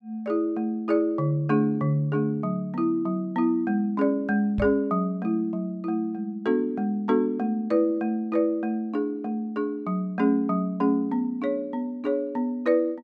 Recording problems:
microphone thump; at 4.5 s; peak -1 dB vs average level

